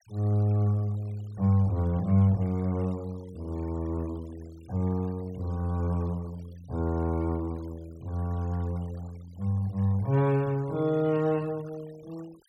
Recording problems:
noise reduction artefacts; signal-to-artefact ratio 26 dB

